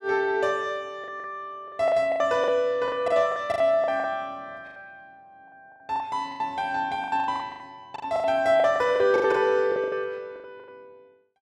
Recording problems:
packet loss; 17% of the sound replaced, filled with the last packet

